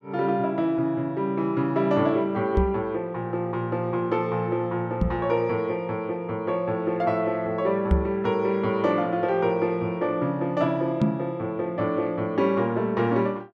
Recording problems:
microphone thump; 4 times, first at 2.5 s; peak +7 dB vs average level

